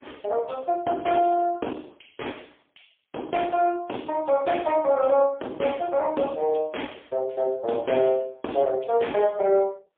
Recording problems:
phone line; 280 Hz to 3.4 kHz, AMR-NB, then MP3

